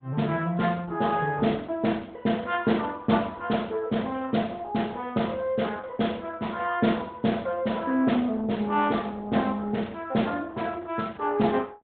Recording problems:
low-pass filter; nothing above 3.9 kHz
lossy compression; Opus, log-spectral distance 4 dB

